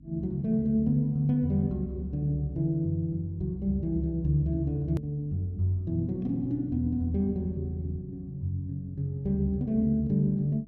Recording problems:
electrical hum; 50 Hz, harmonics up to 300 Hz, SNR 23 dB
hard cut with a click; at 5 s

